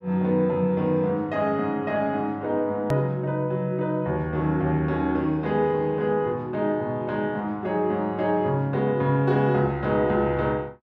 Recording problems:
hard cut with a click; at 3 s

